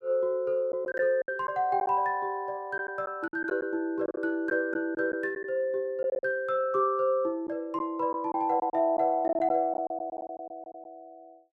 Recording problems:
packet loss; 7% of the sound replaced, filled with silence

